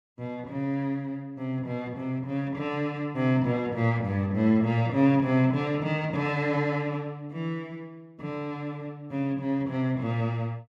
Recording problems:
none

